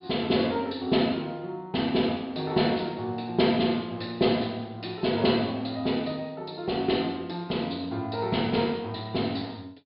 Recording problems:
treble cut off; nothing above 5 kHz

